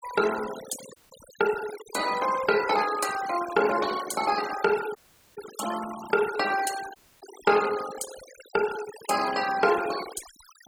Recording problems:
denoising artefacts; signal-to-artefact ratio 12 dB
audio cutting out; at 1 s, at 5 s and at 7 s

